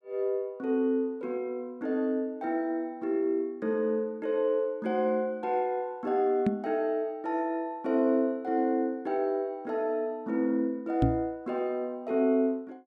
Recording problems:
microphone bump; at 6.5 s and at 11 s; peak +7 dB vs average level

